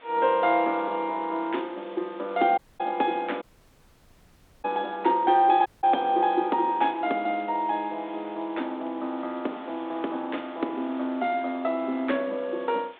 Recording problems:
telephone audio; 220 Hz to 3.8 kHz, G.726
background hiss; SNR 25 dB
audio cutting out; at 2.5 s, at 3.5 s for 1 s and at 5.5 s

